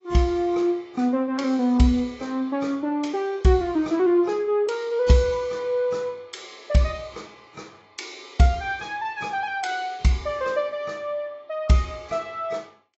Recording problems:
lossy codec; AAC, log-spectral distance 2 dB, nothing above 7.8 kHz

